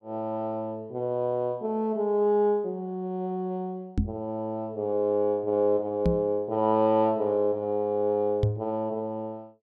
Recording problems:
microphone bump; at 4 s, at 6 s and at 8.5 s; peak +5 dB vs average level

